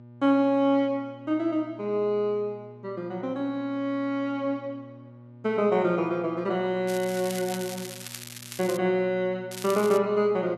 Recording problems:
hum; 60 Hz, harmonics up to 960 Hz, SNR 21 dB
crackling; from 7 to 9 s and at 9.5 s; loose cable, SNR 12 dB

